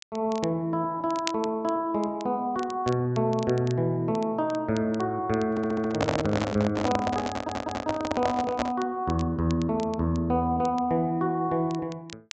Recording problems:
treble missing; nothing above 8 kHz
crackle; vinyl, SNR 19 dB
handling noise; from 5.5 to 9 s; peak +4 dB vs average level
audio stuttering; at 5.5 s and at 7.5 s

